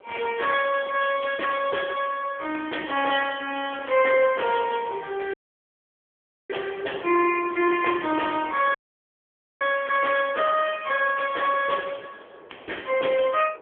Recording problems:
telephone audio; 300 Hz to 3.3 kHz, AMR-NB
wind noise; below 810 Hz, SNR 20 dB
audio cutting out; at 5.5 s for 1 s and at 9 s for 1 s

